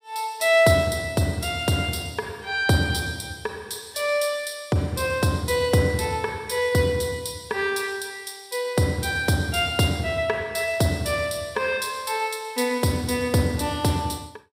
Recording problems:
none

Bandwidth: 15.5 kHz